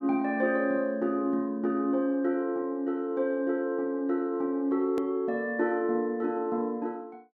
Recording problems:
hard cut with a click; at 5 s

